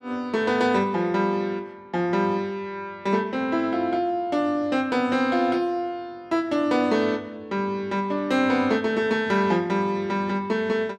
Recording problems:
none

